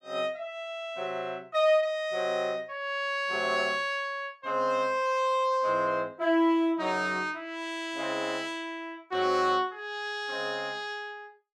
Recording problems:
none

